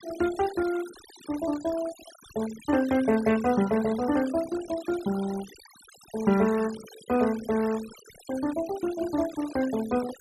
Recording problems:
denoising artefacts; signal-to-artefact ratio 16 dB

